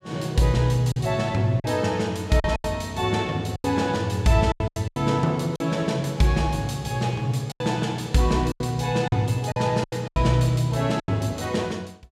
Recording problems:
lost packets; 9% of the sound replaced, filled with silence

